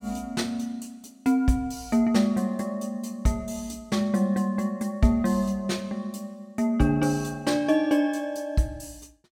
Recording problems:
none

